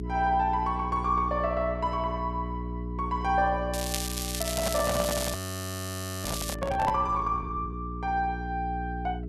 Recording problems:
hum; 60 Hz, harmonics up to 420 Hz, SNR 6 dB
crackle; from 3.5 to 6.5 s; loose cable, SNR 4 dB
handling noise; from 4.5 to 7 s; peak +2 dB vs average level
frozen audio; at 5.5 s for 1 s

